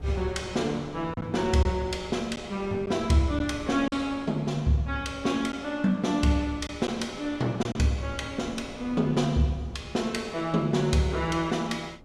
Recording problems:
wind on the microphone; below 300 Hz, SNR 20 dB
packet loss; 1.8% of the sound replaced, filled with silence

